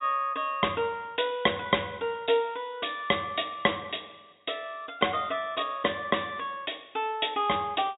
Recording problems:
treble missing; nothing above 4 kHz

